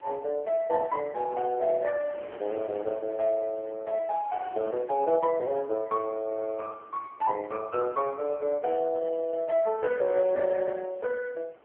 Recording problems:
phone line; 280 Hz to 3 kHz, AMR-NB
wind noise; below 1.1 kHz, SNR 21 dB

